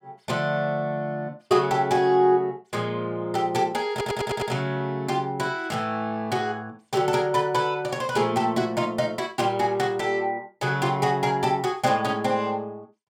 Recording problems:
audio stuttering; at 4 s

